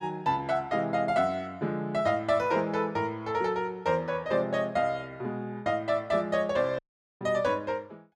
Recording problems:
audio cutting out; at 7 s

